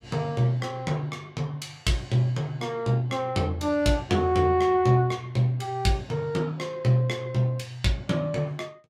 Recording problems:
none

